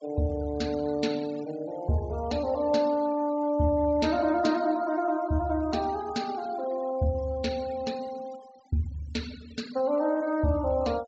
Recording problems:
treble cut off; nothing above 8 kHz
denoising artefacts; signal-to-artefact ratio 20 dB

